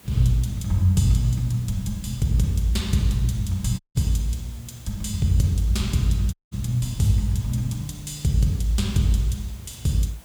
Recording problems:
background hiss; slope -4 dB per octave, SNR 24 dB
audio cutting out; at 4 s and at 6.5 s

